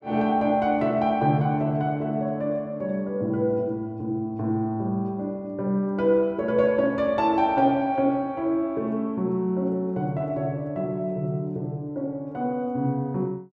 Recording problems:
none

